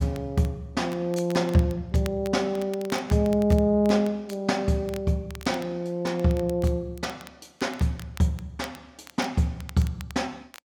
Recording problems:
crackle; vinyl, SNR 21 dB

